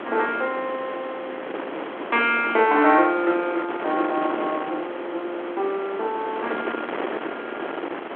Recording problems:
phone line; 280 Hz to 3.6 kHz, G.726
background hiss; SNR 25 dB
wind on the microphone; below 1.3 kHz, SNR 8 dB

